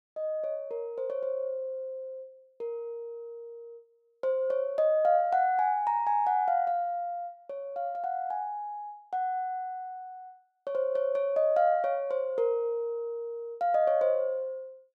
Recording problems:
none

